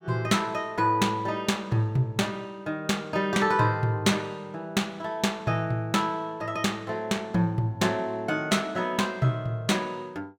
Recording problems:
none

